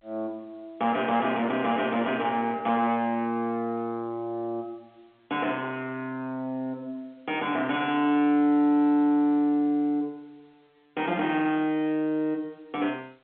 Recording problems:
telephone audio; 260 Hz to 3.6 kHz, G.711
distorted audio; soft clipping, signal-to-distortion ratio 10 dB

